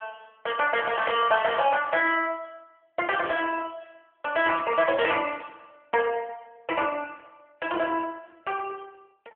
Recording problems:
telephone audio; 320 Hz to 3.3 kHz, AMR-NB

